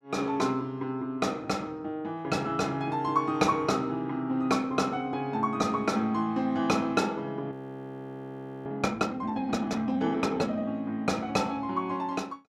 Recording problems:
frozen audio; at 7.5 s for 1 s

